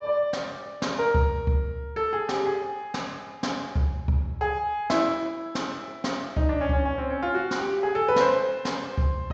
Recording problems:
low-pass filter; nothing above 8 kHz

